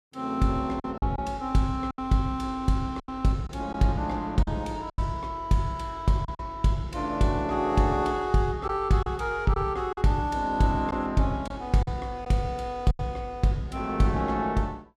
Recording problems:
packet loss; 5% of the sound replaced, filled with silence

